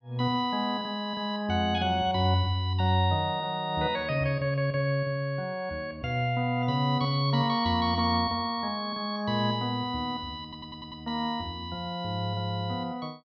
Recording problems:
stutter; at 10 s

